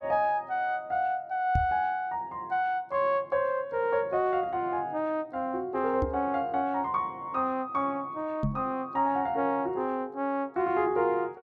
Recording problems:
microphone thump; at 1.5 s, at 6 s and at 8.5 s; peak +3 dB vs average level

